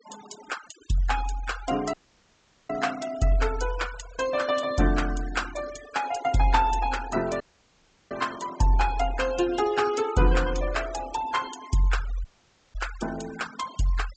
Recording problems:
treble missing; nothing above 8 kHz
noise reduction artefacts; signal-to-artefact ratio 15 dB
audio cutting out; at 2 s for 1 s, at 7.5 s for 0.5 s and at 12 s for 0.5 s

